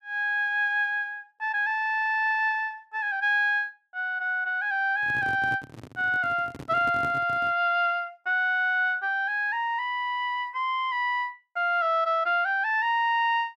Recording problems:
microphone handling noise; from 5 to 7.5 s; peak -8 dB vs average level

